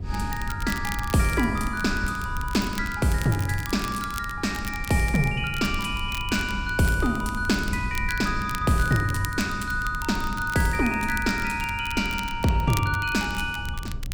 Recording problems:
rumble; below 98 Hz, SNR 10 dB
crackling; vinyl, SNR 15 dB

